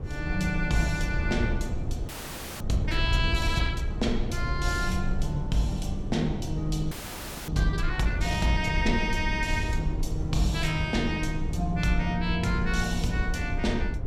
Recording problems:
rumble; below 98 Hz, SNR 3 dB
frozen audio; at 2 s for 0.5 s and at 7 s for 0.5 s

